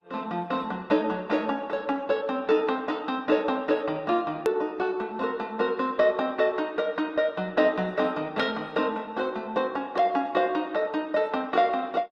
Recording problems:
lossy codec; Opus, log-spectral distance 2 dB, nothing above 14.1 kHz
click at an edit; at 4.5 s

